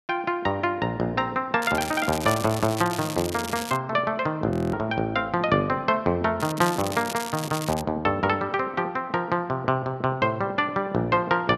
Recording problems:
crackling; from 1.5 to 4 s and from 6.5 to 8 s; loose cable, SNR 10 dB
audio freezing; at 4.5 s

